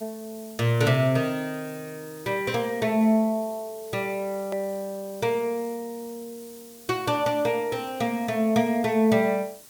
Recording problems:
background hiss; SNR 21 dB
click at an edit; at 4.5 s

